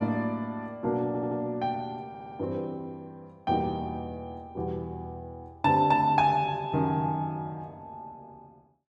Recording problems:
stutter; at 1 s and at 2 s

